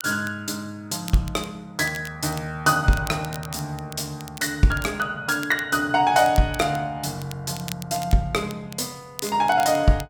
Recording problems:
crackle; vinyl, SNR 17 dB

